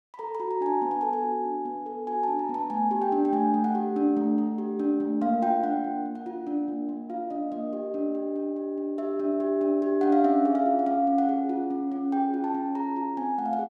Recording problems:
none

